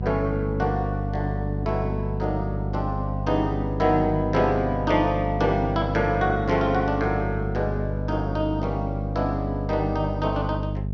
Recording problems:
hum; 50 Hz, harmonics up to 450 Hz, SNR 3 dB

